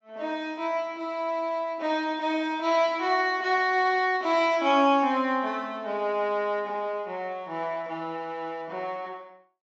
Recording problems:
treble cut off; nothing above 8 kHz

